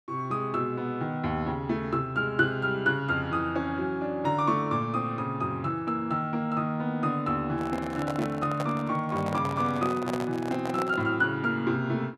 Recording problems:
microphone handling noise; from 7.5 to 11 s; peak -1 dB vs average level

